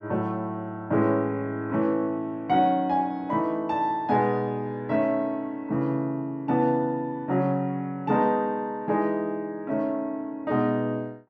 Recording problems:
none

